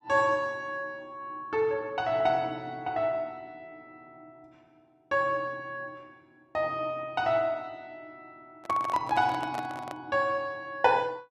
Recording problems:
microphone handling noise; from 8.5 to 10 s; peak -3 dB vs average level

